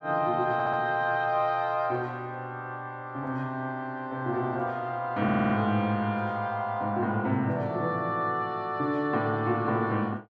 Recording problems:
audio stuttering; at 0.5 s and at 5 s

